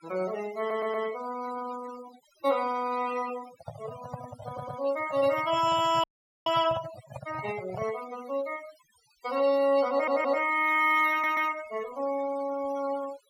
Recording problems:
denoising artefacts; signal-to-artefact ratio 16 dB
stutter; 4 times, first at 0.5 s
handling noise; from 3.5 to 8 s; peak -6 dB vs average level
dropout; at 6 s

